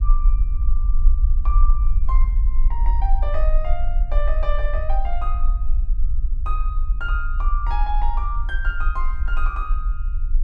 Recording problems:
low-frequency rumble; below 42 Hz, strongest tone 20 Hz, SNR -8 dB

